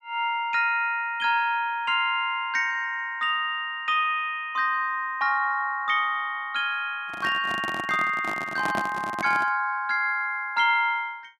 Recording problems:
microphone handling noise; from 7 to 9.5 s; peak -1 dB vs average level

